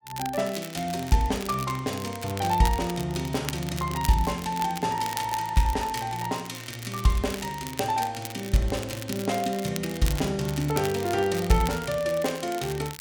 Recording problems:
crackling; vinyl, SNR 12 dB

